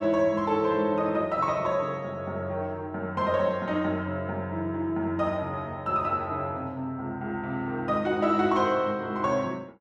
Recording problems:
none

